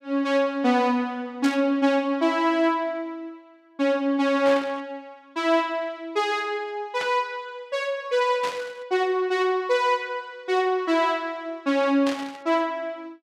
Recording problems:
burst of static; 5 times, first at 1.5 s; peak -5 dB vs average level

